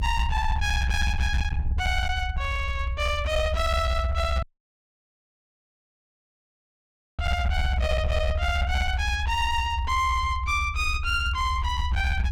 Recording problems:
distorted audio; hard clipping, signal-to-distortion ratio 11 dB
rumble; below 78 Hz, SNR 2 dB
audio cutting out; at 4.5 s for 3 s

